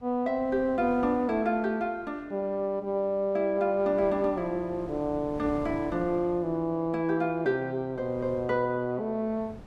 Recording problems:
wind on the microphone; below 430 Hz, SNR 19 dB

